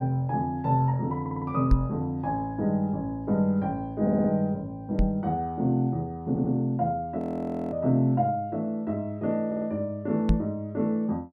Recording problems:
stutter; 4 times, first at 1 s
knock on the microphone; at 1.5 s, at 5 s and at 10 s; peak +8 dB vs average level
audio freezing; at 7 s for 0.5 s

